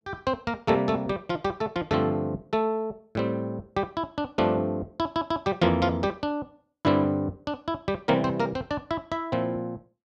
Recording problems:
none

